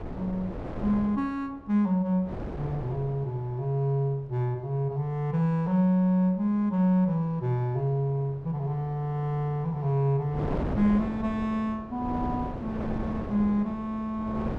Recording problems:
wind noise; below 480 Hz, SNR 10 dB

